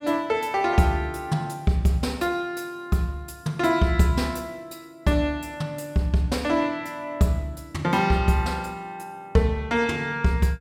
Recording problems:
none

